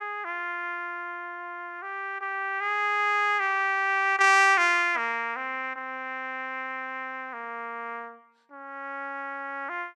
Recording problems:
none

